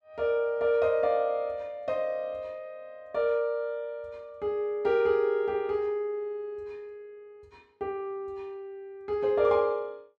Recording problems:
none

